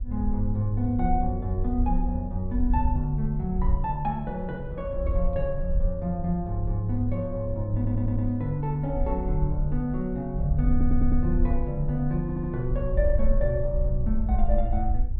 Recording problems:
treble cut off; nothing above 4.7 kHz
wind noise; below 58 Hz, SNR 2 dB
audio stuttering; at 8 s, at 11 s and at 12 s

